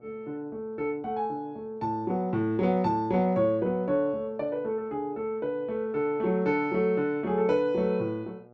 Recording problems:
hum; 60 Hz, harmonics up to 1.4 kHz, SNR 29 dB

